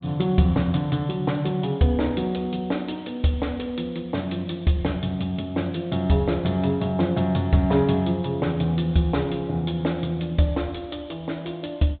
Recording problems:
treble cut off; nothing above 4 kHz

